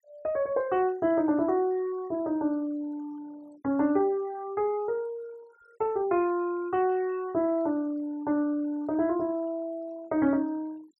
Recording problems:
denoising artefacts; signal-to-artefact ratio 27 dB

